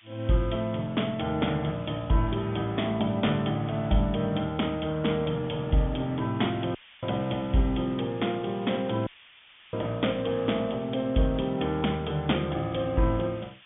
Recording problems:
low-pass filter; nothing above 3.5 kHz
codec artefacts; AAC, log-spectral distance 3 dB
background hiss; SNR 24 dB
dropout; at 7 s and at 9 s for 0.5 s

